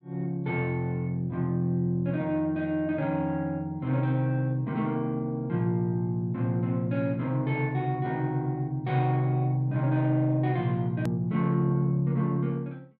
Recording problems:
hard cut with a click; at 11 s

